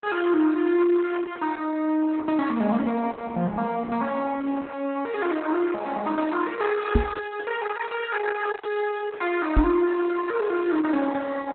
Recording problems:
lossy compression; Opus, log-spectral distance 4 dB, nothing above 3.9 kHz
knock on the microphone; at 7 s and at 9.5 s; peak +8 dB vs average level

